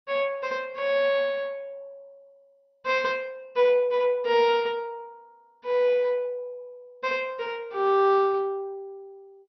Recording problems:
codec artefacts; MP2, log-spectral distance 2 dB, nothing above 5.2 kHz

